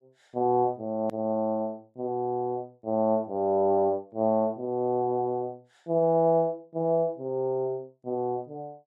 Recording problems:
hard cut with a click; at 1 s

